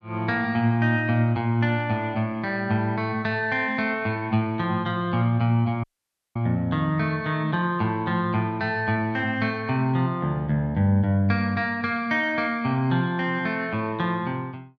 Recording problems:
audio cutting out; at 6 s for 0.5 s

